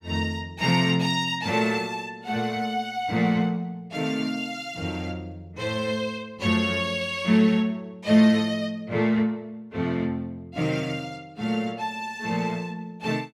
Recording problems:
none

